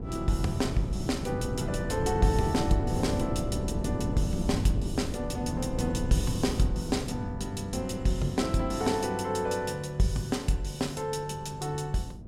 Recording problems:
wind noise; below 230 Hz, SNR 4 dB

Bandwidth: 16 kHz